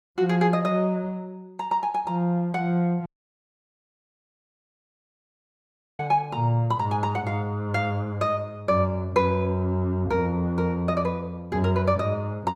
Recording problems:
audio cutting out; at 3 s for 3 s

